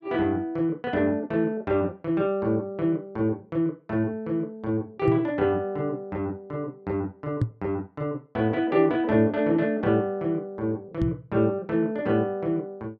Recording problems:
microphone thump; at 5 s, at 7.5 s and at 11 s; peak +5 dB vs average level

